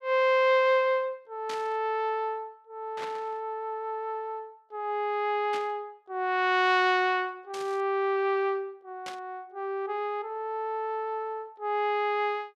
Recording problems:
static burst; 5 times, first at 1.5 s; peak -7 dB vs average level

